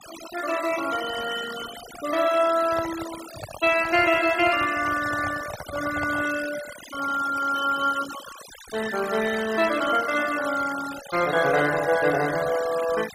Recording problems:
denoising artefacts; signal-to-artefact ratio 13 dB
handling noise; from 2.5 to 6.5 s; peak -7 dB vs average level

